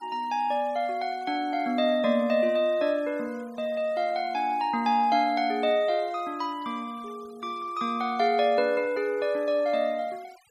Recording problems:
denoising artefacts; signal-to-artefact ratio 26 dB

